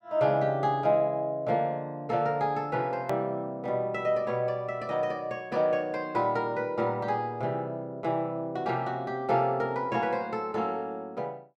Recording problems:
click at an edit; at 3 s

